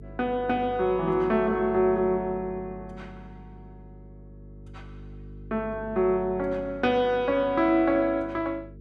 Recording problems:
hum; 50 Hz, harmonics up to 450 Hz, SNR 19 dB

